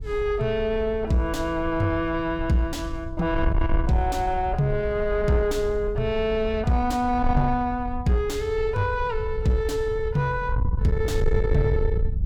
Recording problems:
distortion; soft clipping, signal-to-distortion ratio 12 dB
wind noise; below 82 Hz, SNR 6 dB

